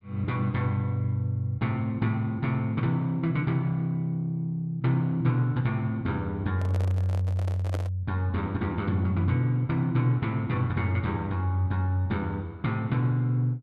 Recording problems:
handling noise; from 6.5 to 8 s; peak -4 dB vs average level

